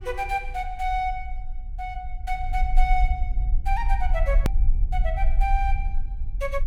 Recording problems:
low-frequency rumble; below 44 Hz, strongest tone 24 Hz, SNR -2 dB
click at an edit; at 4.5 s

